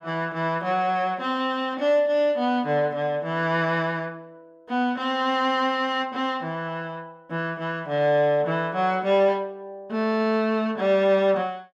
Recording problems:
none

